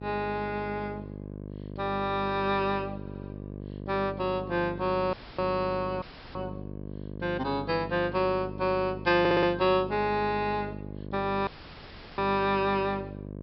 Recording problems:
treble missing; nothing above 5.4 kHz
hum; 50 Hz, harmonics up to 700 Hz, SNR 11 dB
audio stuttering; at 3 s and at 9 s
audio cutting out; at 5 s, at 6 s and at 11 s for 0.5 s; filled with static

